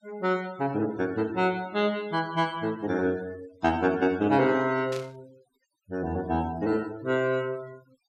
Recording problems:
denoising artefacts; signal-to-artefact ratio 22 dB
burst of static; at 5 s; peak -9 dB vs average level

